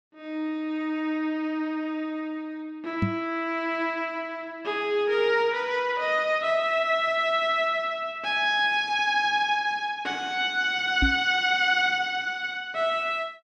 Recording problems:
microphone thump; at 3 s and at 11 s; peak +4 dB vs average level

